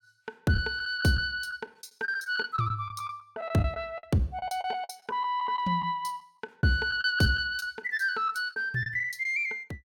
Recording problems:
lost packets; 11% of the sound replaced, filled with the last packet

